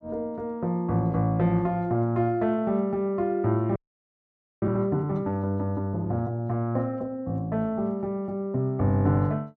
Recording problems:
frozen audio; at 4 s for 1 s

